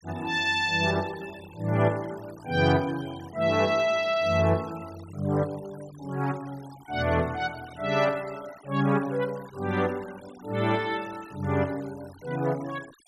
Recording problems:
noise reduction artefacts; signal-to-artefact ratio 21 dB

